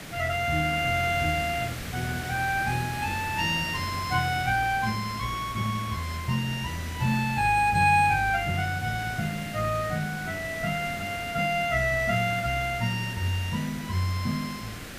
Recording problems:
background hiss; SNR 11 dB

